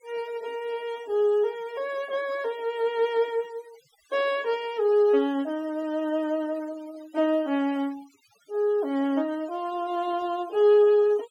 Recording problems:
denoising artefacts; signal-to-artefact ratio 23 dB

